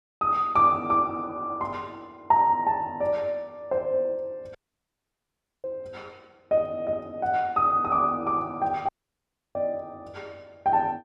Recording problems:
dropout; at 4.5 s for 1 s and at 9 s for 0.5 s

